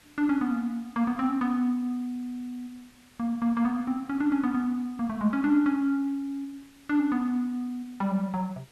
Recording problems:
hiss; slope -1 dB per octave, SNR 28 dB

